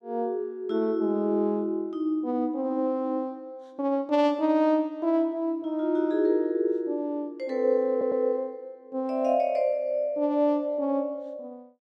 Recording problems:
stutter; at 8 s

